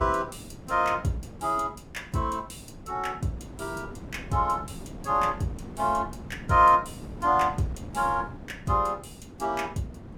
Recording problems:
wind noise; below 330 Hz, SNR 15 dB

